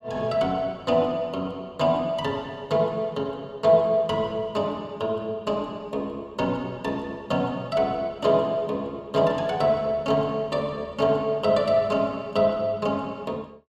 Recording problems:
none

